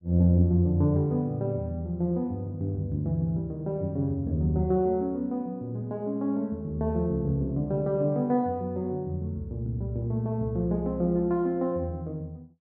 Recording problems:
none

